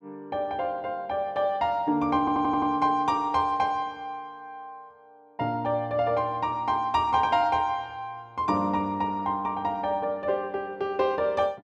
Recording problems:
audio stuttering; at 2 s

